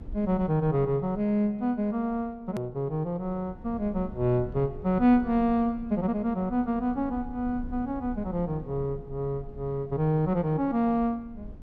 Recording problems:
low-frequency rumble; below 98 Hz, SNR 17 dB
hard cut with a click; at 2.5 s

